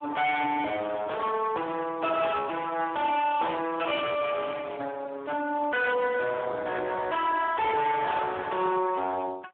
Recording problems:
telephone audio; 280 Hz to 2.6 kHz, Speex
distortion; hard clipping, signal-to-distortion ratio 9 dB

